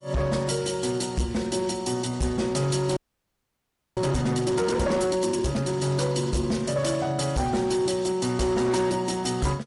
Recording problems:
lossy compression; MP3, then MP3, log-spectral distance 4 dB, nothing above 11 kHz
distorted audio; hard clipping, signal-to-distortion ratio 10 dB
audio freezing; at 3 s for 1 s

